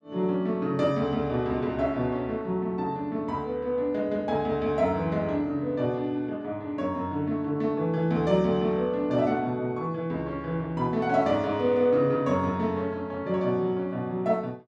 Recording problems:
none

